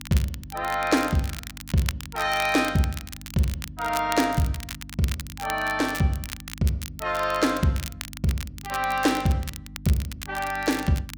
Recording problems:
mains hum; 50 Hz, harmonics up to 300 Hz, SNR 18 dB
crackling; vinyl, SNR 12 dB

